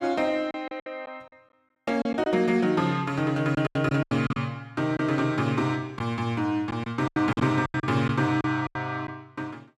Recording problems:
packet loss; 10% of the sound replaced, filled with silence

